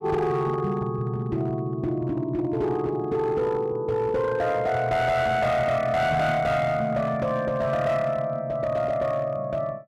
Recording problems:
distortion; hard clipping, signal-to-distortion ratio 12 dB

